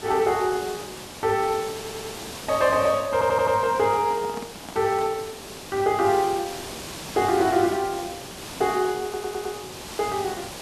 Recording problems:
hiss; slope -3 dB per octave, SNR 12 dB
stutter; at 2 s, at 3 s and at 9 s
handling noise; from 3.5 to 5 s; peak -8 dB vs average level

